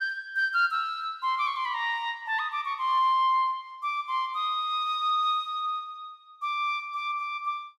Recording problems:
none

